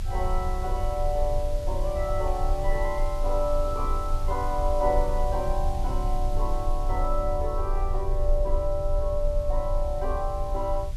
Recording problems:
background hiss; slope -1 dB per octave, SNR 18 dB
rumble; below 44 Hz, strongest tone 26 Hz, SNR 1 dB

